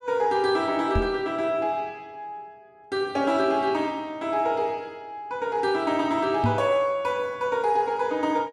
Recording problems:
knock on the microphone; at 1 s and at 6.5 s; peak +4 dB vs average level

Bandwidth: 13 kHz